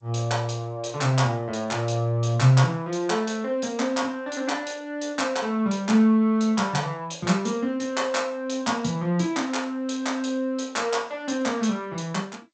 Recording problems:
lossy compression; G.722, log-spectral distance 4 dB, nothing above 7.6 kHz

